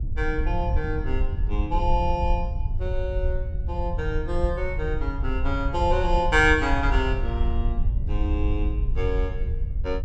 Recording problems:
rumble; below 66 Hz, SNR 2 dB
wind on the microphone; below 96 Hz, SNR 7 dB

